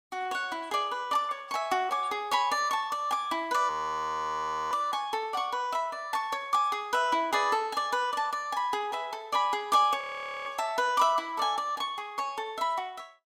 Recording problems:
audio freezing; at 3.5 s for 1 s and at 10 s

